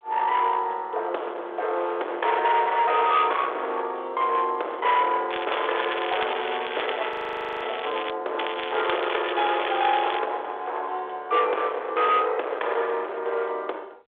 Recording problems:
telephone audio; 390 Hz to 3.8 kHz, G.726
distorted audio; hard clipping, signal-to-distortion ratio 9 dB
crackling; from 5.5 to 8 s and from 8.5 to 10 s; loose cable, SNR 8 dB
frozen audio; at 7 s for 0.5 s

